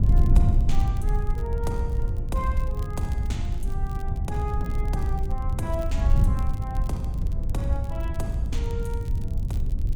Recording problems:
wind noise; below 86 Hz, SNR -7 dB
crackle; vinyl, SNR 20 dB

